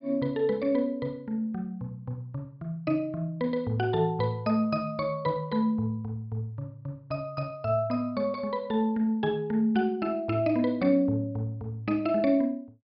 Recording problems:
low-pass filter; nothing above 5.5 kHz

